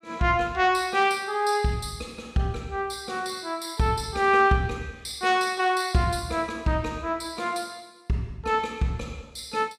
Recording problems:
none

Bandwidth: 15.5 kHz